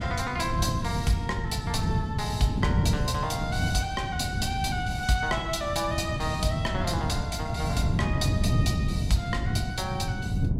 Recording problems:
wind on the microphone; below 180 Hz, SNR 0 dB

